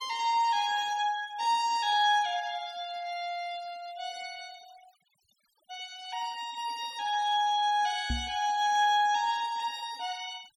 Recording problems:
denoising artefacts; signal-to-artefact ratio 22 dB
microphone bump; at 8 s; peak 0 dB vs average level

